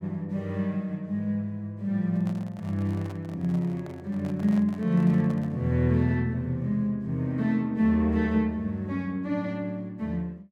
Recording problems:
microphone handling noise; from 2 to 5.5 s; peak -11 dB vs average level

